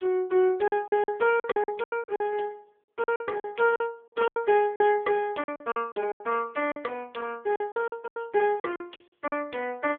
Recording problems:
telephone audio; 320 Hz to 3.3 kHz, AMR-NB
packet loss; 14% of the sound replaced, filled with silence

